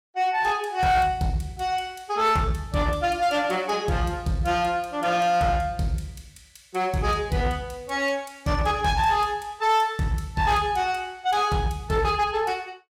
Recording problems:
distortion; hard clipping, uneven, signal-to-distortion ratio 11 dB

